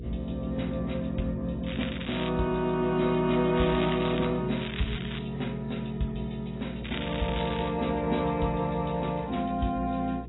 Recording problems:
lossy codec; AAC, log-spectral distance 8 dB, nothing above 3.9 kHz
hum; 60 Hz, harmonics up to 480 Hz, SNR 12 dB
crackling; 4 times, first at 1.5 s; loose cable, SNR 10 dB

